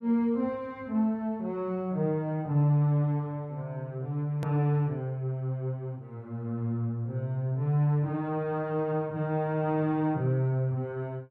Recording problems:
edit click; at 4.5 s

